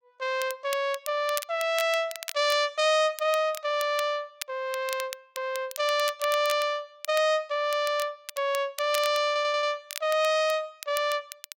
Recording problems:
crackling; vinyl, SNR 13 dB
audio stuttering; at 9.5 s

